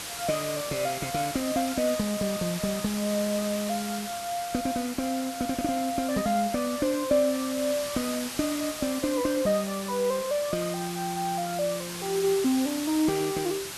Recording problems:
background hiss; slope 0 dB per octave, SNR 7 dB

